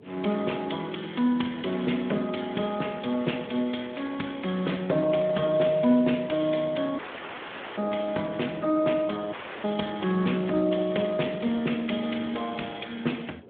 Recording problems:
phone line; 220 Hz to 3.5 kHz, Speex
wind on the microphone; below 490 Hz, SNR 22 dB
audio cutting out; at 7 s for 1 s and at 9.5 s

